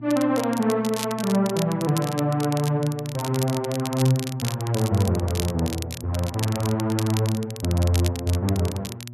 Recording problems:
hum; 60 Hz, harmonics up to 600 Hz, SNR 16 dB
crackling; vinyl, SNR 11 dB

